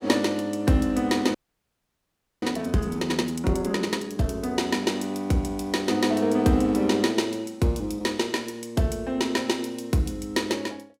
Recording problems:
frozen audio; at 1.5 s for 1 s

